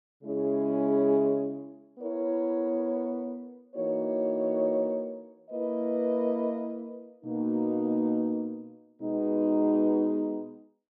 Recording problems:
none

